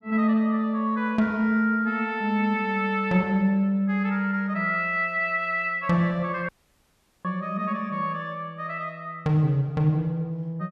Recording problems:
dropout; at 6.5 s for 1 s

